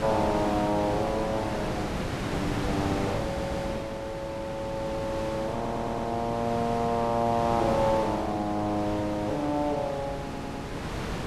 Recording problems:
wind on the microphone; below 1.1 kHz, SNR 5 dB
audio stuttering; at 3 s, at 5.5 s and at 10 s

